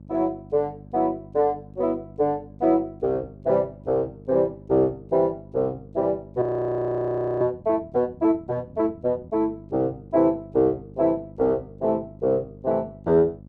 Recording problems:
hum; 50 Hz, harmonics up to 600 Hz, SNR 21 dB
audio freezing; at 6.5 s for 1 s

